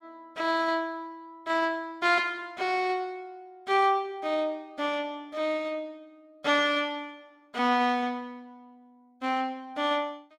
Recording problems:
none

